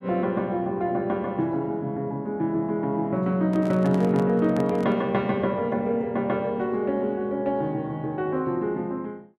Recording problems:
microphone handling noise; from 3.5 to 5 s; peak -6 dB vs average level

